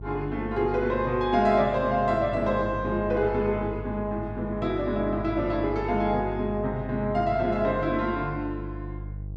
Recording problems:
mains hum; 50 Hz, harmonics up to 350 Hz, SNR 11 dB

